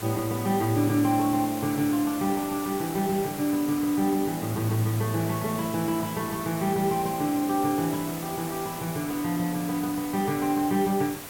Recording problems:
hiss; slope -3 dB per octave, SNR 10 dB

